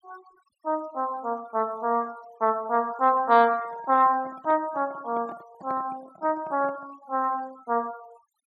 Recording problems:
denoising artefacts; signal-to-artefact ratio 25 dB
handling noise; from 3 to 7 s; peak -11 dB vs average level

